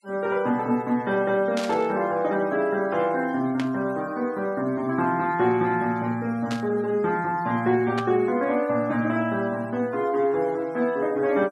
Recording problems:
noise reduction artefacts; signal-to-artefact ratio 25 dB
static burst; 4 times, first at 1.5 s; peak -4 dB vs average level

